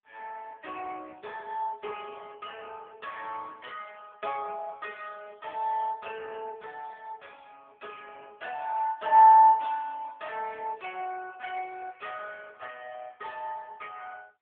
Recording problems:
telephone audio; 320 Hz to 3.4 kHz, AMR-NB

